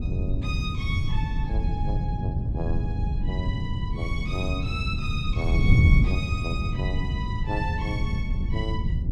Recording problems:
wind noise; below 130 Hz, SNR -7 dB

